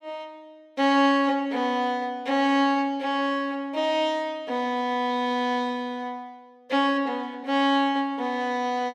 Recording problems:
none

